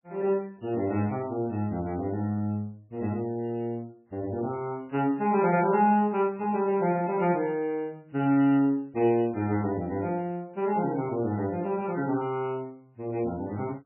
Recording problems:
lossy compression; MP3, log-spectral distance 2 dB, nothing above 2.7 kHz

